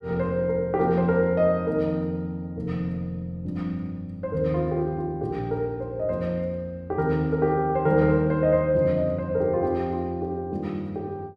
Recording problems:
none

